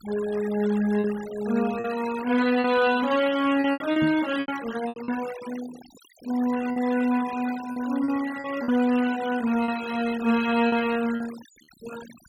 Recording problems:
noise reduction artefacts; signal-to-artefact ratio 16 dB
lost packets; 7% of the sound replaced, filled with repeated pitch periods
microphone bump; at 4 s; peak -1 dB vs average level

